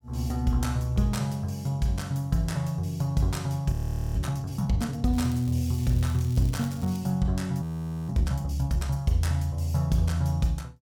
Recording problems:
frozen audio; at 3.5 s and at 7.5 s
crackling; from 5 to 7 s; loose cable, SNR 21 dB

